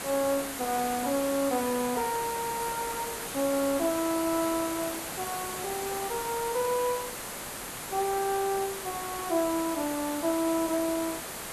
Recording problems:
background hiss; slope -3 dB per octave, SNR 5 dB

